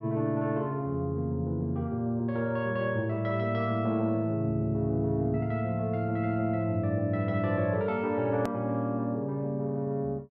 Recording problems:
hard cut with a click; at 8.5 s

